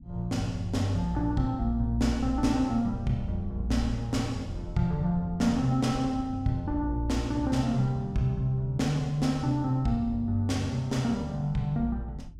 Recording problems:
rumble; below 110 Hz, SNR 16 dB

